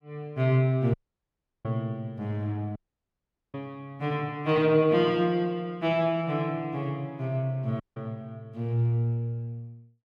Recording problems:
audio cutting out; at 1 s for 0.5 s, at 3 s for 1 s and at 8 s

